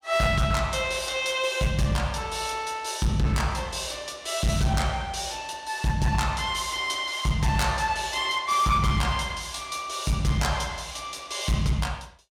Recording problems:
distorted audio; hard clipping, signal-to-distortion ratio 12 dB

